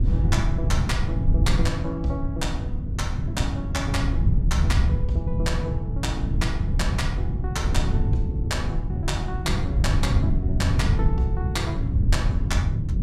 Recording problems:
wind on the microphone; below 120 Hz, SNR -5 dB

